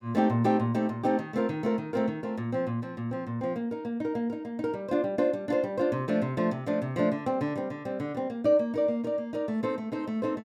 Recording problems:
none

